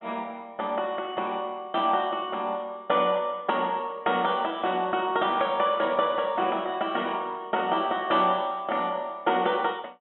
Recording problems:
treble cut off; nothing above 3.6 kHz

